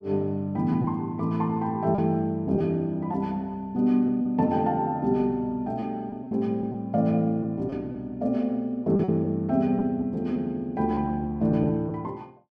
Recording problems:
lost packets; 4% of the sound replaced, filled with repeated pitch periods

